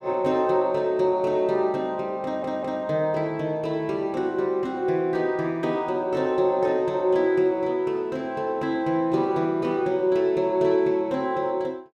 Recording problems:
audio stuttering; at 2 s

